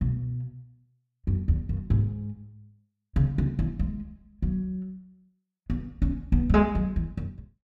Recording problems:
none

